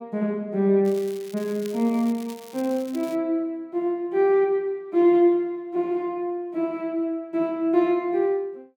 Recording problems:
crackling; from 1 to 3 s; loose cable, SNR 22 dB

